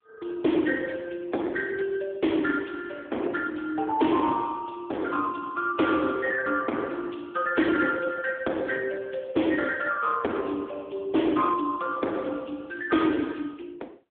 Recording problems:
telephone audio; 220 Hz to 3.4 kHz, AMR-NB
distortion; hard clipping, uneven, signal-to-distortion ratio 10 dB

